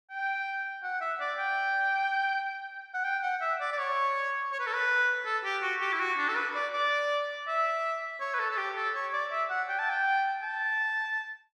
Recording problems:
none

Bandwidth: 13.5 kHz